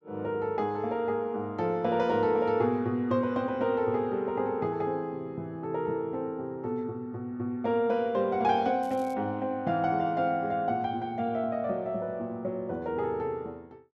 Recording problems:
crackling; at 9 s; loose cable, SNR 27 dB

